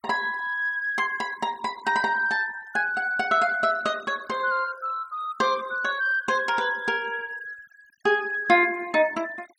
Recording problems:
denoising artefacts; signal-to-artefact ratio 23 dB

